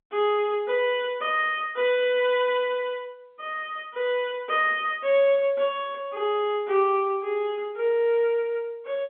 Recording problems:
phone line; 280 Hz to 3.4 kHz, G.711

